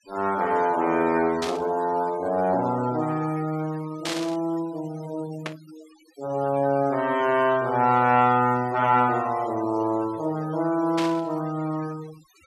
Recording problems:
noise reduction artefacts; signal-to-artefact ratio 19 dB
static burst; 4 times, first at 1.5 s; peak -2 dB vs average level

